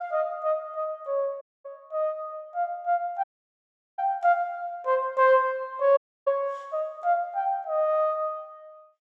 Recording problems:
dropout; at 1.5 s, at 3 s for 0.5 s and at 6 s

